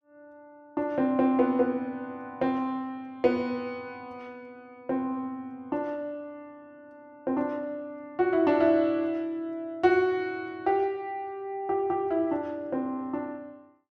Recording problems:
none

